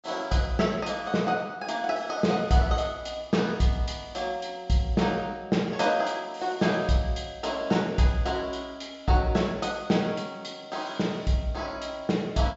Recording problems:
treble missing; nothing above 8 kHz

